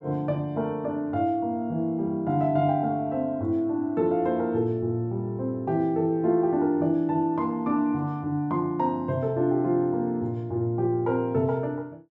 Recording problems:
none

